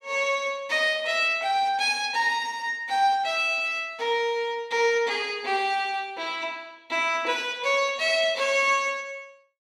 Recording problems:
none

